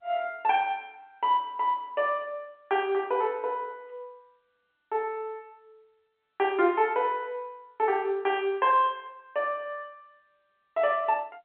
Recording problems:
telephone audio; 300 Hz to 3.5 kHz, G.711

